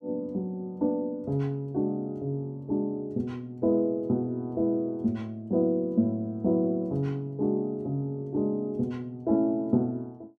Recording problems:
none

